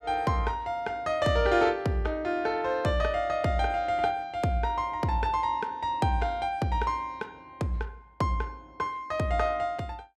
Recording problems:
none

